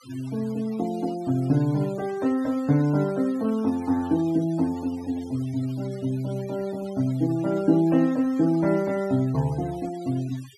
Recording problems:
noise reduction artefacts; signal-to-artefact ratio 22 dB

